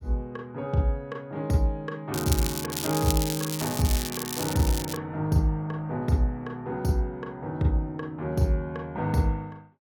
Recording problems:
crackling; from 2 to 5 s; loose cable, SNR 5 dB

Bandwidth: 18 kHz